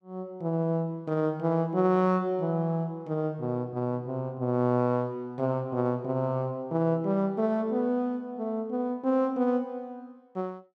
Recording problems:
none

